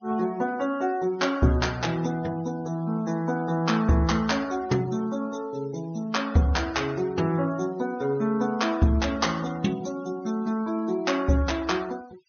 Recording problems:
low-pass filter; nothing above 6.5 kHz
noise reduction artefacts; signal-to-artefact ratio 22 dB

